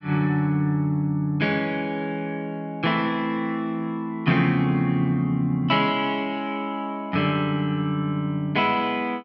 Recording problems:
treble cut off; nothing above 6.2 kHz

